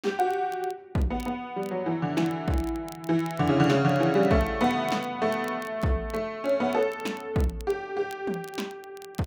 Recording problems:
crackling; vinyl, SNR 24 dB

